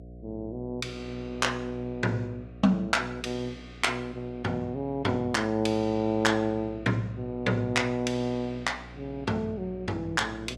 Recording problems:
electrical hum; 60 Hz, harmonics up to 720 Hz, SNR 17 dB

